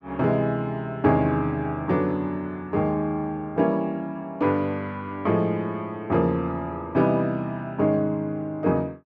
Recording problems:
none

